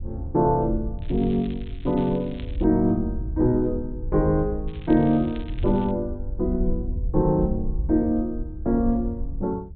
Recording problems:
treble missing; nothing above 4 kHz
wind on the microphone; below 78 Hz, SNR 8 dB
crackle; from 1 to 2.5 s and from 4.5 to 6 s; loose cable, SNR 25 dB

